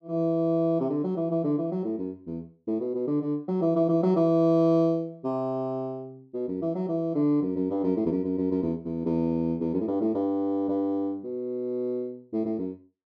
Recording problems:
none

